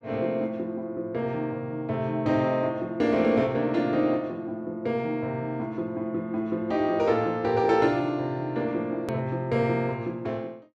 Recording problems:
edit click; at 9 s

